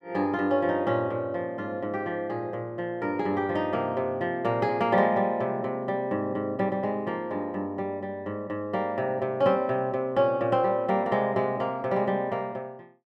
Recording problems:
none

